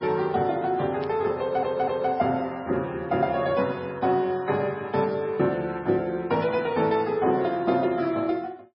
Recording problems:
codec artefacts; MP3, log-spectral distance 2 dB, nothing above 4.9 kHz
burst of static; at 1 s, at 5 s and at 6.5 s; peak -13 dB vs average level
stutter; at 1.5 s

